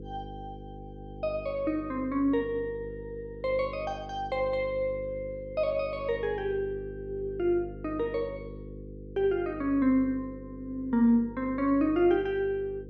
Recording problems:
hum; 50 Hz, harmonics up to 500 Hz, SNR 14 dB

